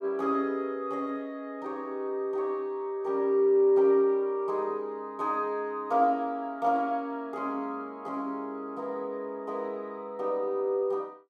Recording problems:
none

